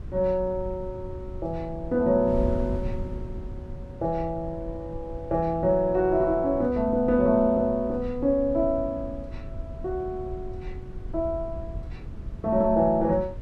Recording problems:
wind on the microphone; below 110 Hz, SNR 12 dB

